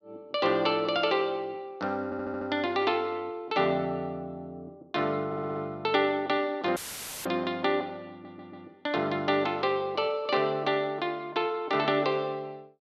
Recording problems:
stutter; at 2 s, at 5.5 s and at 8 s
audio cutting out; at 7 s; filled with static

